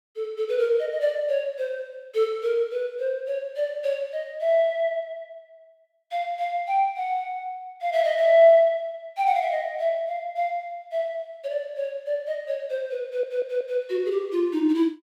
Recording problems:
audio stuttering; at 13 s

